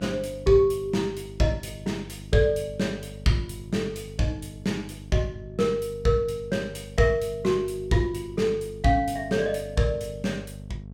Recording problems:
hum; 50 Hz, harmonics up to 650 Hz, SNR 15 dB

